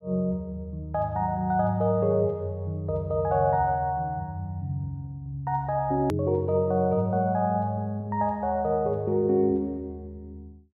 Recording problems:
edit click; at 6 s

